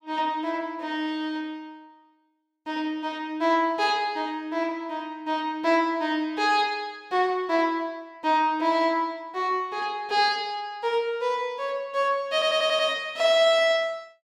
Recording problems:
stutter; at 12 s

